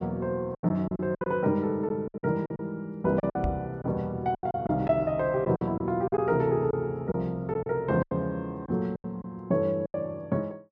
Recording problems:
lost packets; 11% of the sound replaced, filled with silence
microphone bump; at 3.5 s; peak +1 dB vs average level

